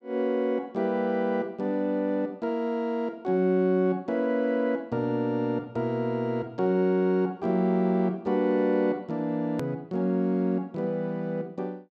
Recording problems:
click at an edit; at 9.5 s

